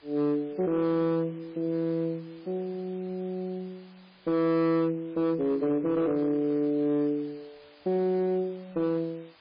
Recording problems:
codec artefacts; MP3, log-spectral distance 6 dB, nothing above 10.7 kHz
distortion; hard clipping, signal-to-distortion ratio 11 dB
hiss; SNR 28 dB

